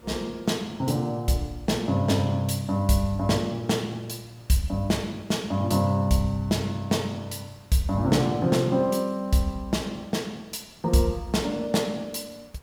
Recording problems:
background hiss; slope -5 dB per octave, SNR 28 dB

